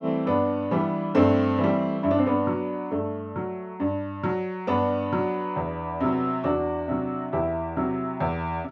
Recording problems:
none

